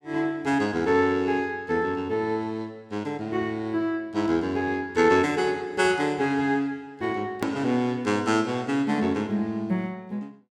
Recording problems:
hard cut with a click; at 7.5 s

